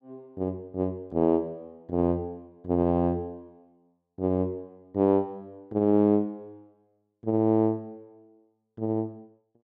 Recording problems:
none

